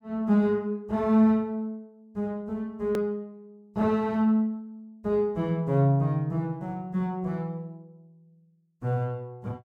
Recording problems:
hard cut with a click; at 3 s

